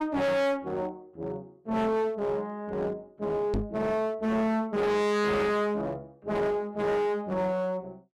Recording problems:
distortion; hard clipping, uneven, signal-to-distortion ratio 5 dB
microphone thump; at 3.5 s; peak +2 dB vs average level

